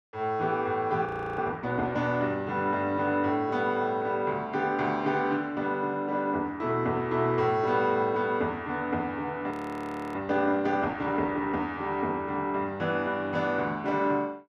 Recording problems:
audio freezing; at 1 s and at 9.5 s for 0.5 s

